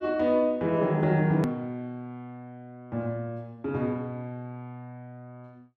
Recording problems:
edit click; at 1.5 s

